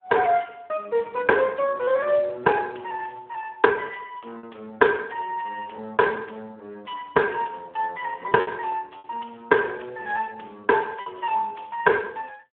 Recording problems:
telephone audio; 240 Hz to 2.1 kHz, Speex
packet loss; 2% of the sound replaced, filled with repeated pitch periods

